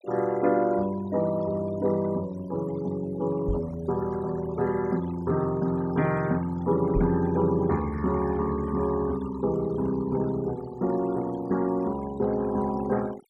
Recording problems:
denoising artefacts; signal-to-artefact ratio 19 dB
microphone bump; at 3.5 s and at 7 s; peak +1 dB vs average level

